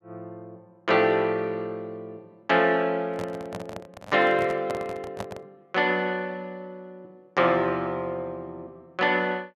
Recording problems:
microphone handling noise; from 3 to 5.5 s; peak -5 dB vs average level

